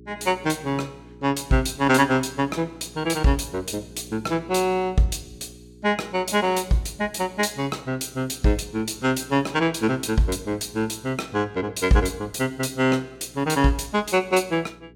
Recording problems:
hum; 60 Hz, harmonics up to 420 Hz, SNR 23 dB

